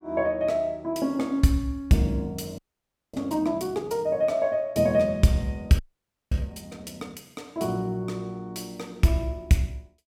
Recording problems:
audio freezing; at 2.5 s for 0.5 s and at 6 s for 0.5 s

